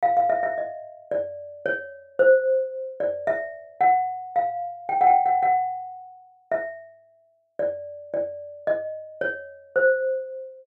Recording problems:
none

